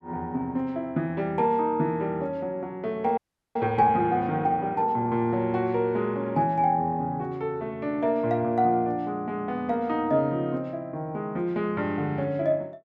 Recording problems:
audio freezing; at 3 s

